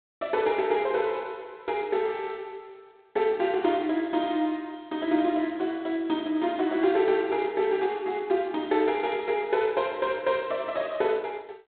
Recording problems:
telephone audio; 190 Hz to 3.7 kHz, G.726

